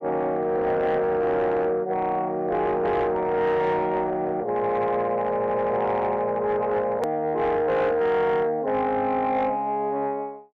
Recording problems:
distortion; soft clipping, signal-to-distortion ratio 12 dB
edit click; at 7 s

